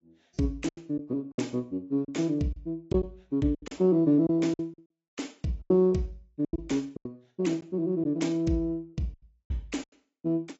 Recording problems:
codec artefacts; AAC, log-spectral distance 2 dB, nothing above 7.8 kHz
packet loss; 10% of the sound replaced, filled with silence

